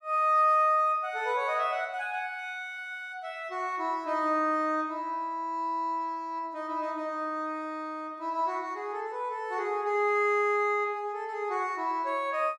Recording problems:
none

